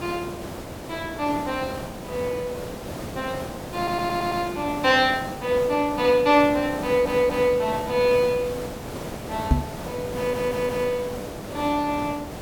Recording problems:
background hiss; slope -7 dB per octave, SNR 10 dB
stutter; at 4 s, at 7 s and at 10 s
microphone bump; at 9.5 s; peak +7 dB vs average level

